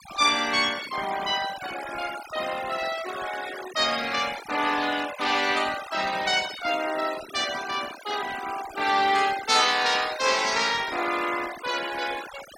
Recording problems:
denoising artefacts; signal-to-artefact ratio 12 dB

